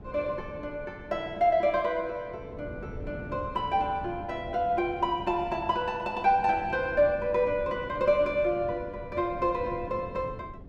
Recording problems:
wind noise; below 300 Hz, SNR 15 dB

